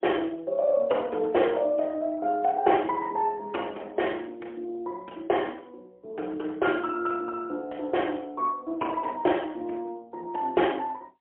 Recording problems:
telephone audio; 260 Hz to 3.3 kHz, AMR-NB, then MP3

